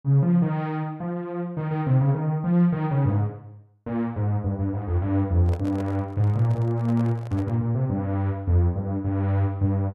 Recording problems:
handling noise; from 5.5 to 7.5 s; peak -10 dB vs average level

